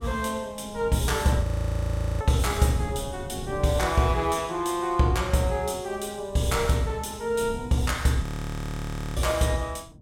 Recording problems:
wind on the microphone; below 210 Hz, SNR 15 dB
audio freezing; at 1.5 s for 1 s and at 8 s for 1 s

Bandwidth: 16.5 kHz